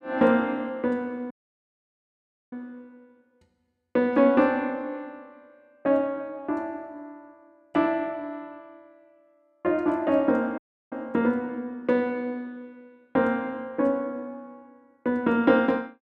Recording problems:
audio cutting out; at 1.5 s for 1 s and at 11 s

